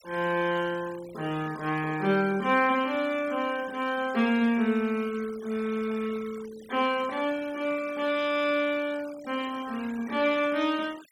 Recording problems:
noise reduction artefacts; signal-to-artefact ratio 19 dB

